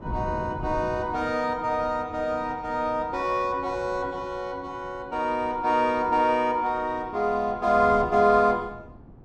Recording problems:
wind on the microphone; below 290 Hz, SNR 17 dB

